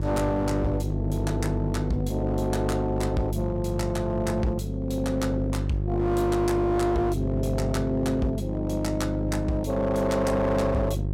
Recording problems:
distorted audio; hard clipping, signal-to-distortion ratio 11 dB
hum; 50 Hz, harmonics up to 700 Hz, SNR 3 dB

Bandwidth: 16.5 kHz